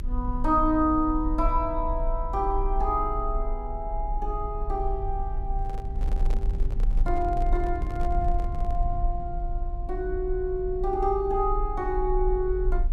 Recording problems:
low-frequency rumble; below 46 Hz, strongest tone 28 Hz, SNR 3 dB
handling noise; from 5.5 to 9 s; peak -10 dB vs average level

